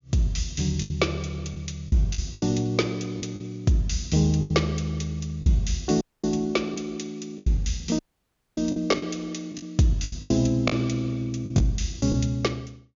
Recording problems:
treble cut off; nothing above 7.1 kHz
packet loss; 8% of the sound replaced, filled with the last packet
audio cutting out; at 6 s and at 8 s for 0.5 s

